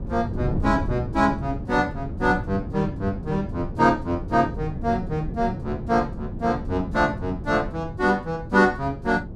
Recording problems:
wind on the microphone; below 210 Hz, SNR 8 dB

